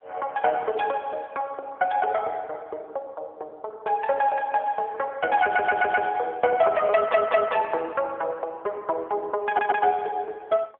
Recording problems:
phone line; 340 Hz to 2.6 kHz, AMR-NB
audio stuttering; at 5.5 s, at 7 s and at 9.5 s

